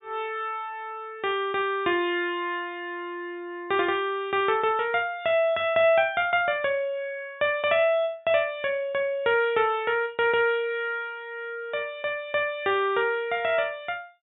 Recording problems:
treble cut off; nothing above 4 kHz

